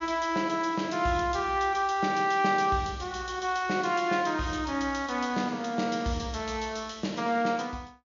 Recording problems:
treble cut off; nothing above 7.1 kHz

